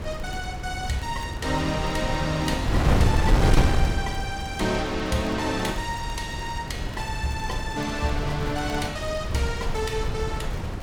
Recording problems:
wind on the microphone; below 250 Hz, SNR 0 dB
crackling; vinyl, SNR 24 dB

